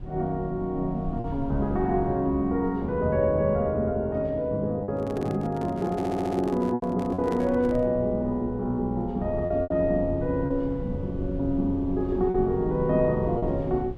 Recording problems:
hum; 60 Hz, harmonics up to 840 Hz, SNR 23 dB
rumble; below 96 Hz, SNR 14 dB
packet loss; 3% of the sound replaced, filled with repeated pitch periods
handling noise; from 5 to 8 s; peak -6 dB vs average level
stutter; at 6 s

